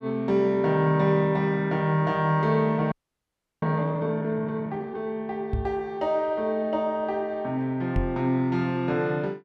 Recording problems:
audio freezing; at 3 s for 0.5 s
microphone bump; at 5.5 s and at 8 s; peak +1 dB vs average level

